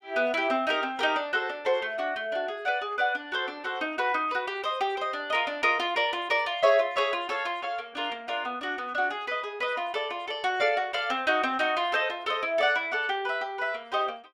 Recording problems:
none

